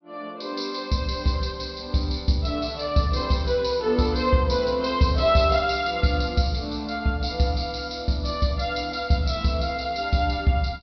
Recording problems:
treble cut off; nothing above 5.5 kHz

